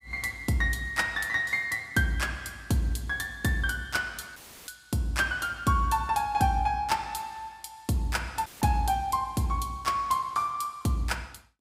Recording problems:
dropout; at 4.5 s and at 8.5 s; filled with static

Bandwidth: 15.5 kHz